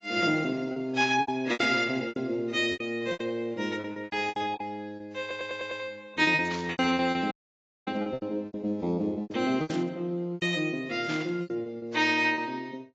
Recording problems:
codec artefacts; AAC, log-spectral distance 2 dB, nothing above 7.6 kHz
packet loss; 15% of the sound replaced, filled with repeated pitch periods
burst of static; 4 times, first at 1 s; peak -5 dB vs average level
stutter; at 5 s
audio cutting out; at 7.5 s for 0.5 s

